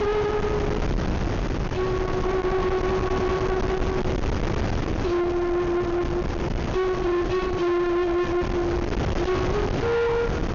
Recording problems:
treble missing; nothing above 6.9 kHz
distorted audio; soft clipping, signal-to-distortion ratio 7 dB
wind noise; below 590 Hz, SNR 3 dB

